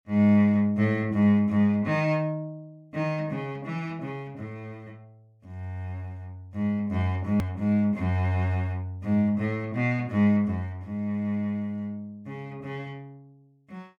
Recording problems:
click at an edit; at 7.5 s

